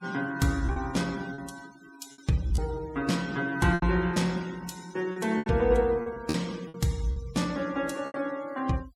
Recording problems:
denoising artefacts; signal-to-artefact ratio 19 dB
packet loss; 8% of the sound replaced, filled with repeated pitch periods

